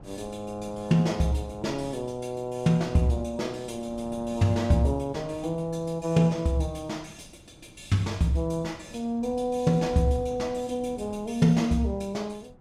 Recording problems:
wind on the microphone; below 300 Hz, SNR 21 dB

